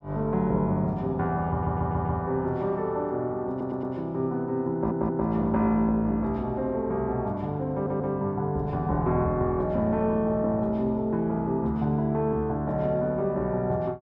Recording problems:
audio stuttering; 4 times, first at 1.5 s

